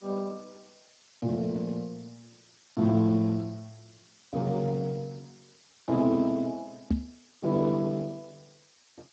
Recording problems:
lossy codec; Speex, log-spectral distance 12 dB
background hiss; slope +2 dB per octave, SNR 29 dB
microphone bump; at 7 s; peak +6 dB vs average level

